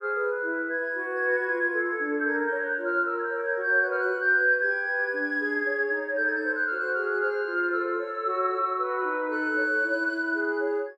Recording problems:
none

